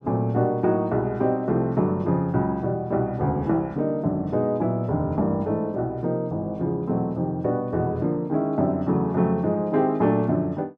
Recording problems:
none

